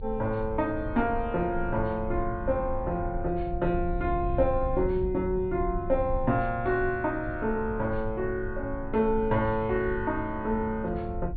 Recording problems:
treble cut off; nothing above 4.6 kHz
low-frequency rumble; below 82 Hz, strongest tone 20 Hz, SNR 9 dB

